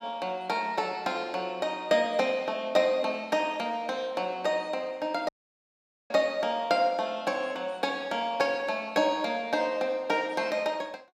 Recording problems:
dropout; at 5.5 s for 1 s

